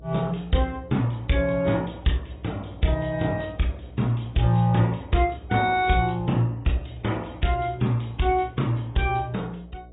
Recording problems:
codec artefacts; AAC, log-spectral distance 5 dB, nothing above 3.8 kHz
electrical hum; 60 Hz, harmonics up to 720 Hz, SNR 21 dB

